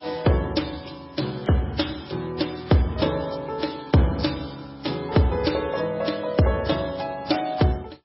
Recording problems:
lossy codec; MP3, then AAC, log-spectral distance 6 dB, nothing above 5.5 kHz

